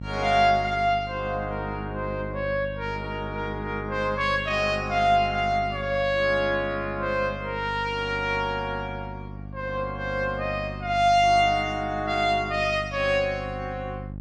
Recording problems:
hum; 50 Hz, harmonics up to 600 Hz, SNR 12 dB

